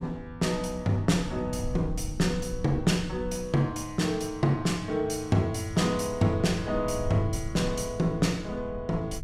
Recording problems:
rumble; below 120 Hz, SNR 12 dB

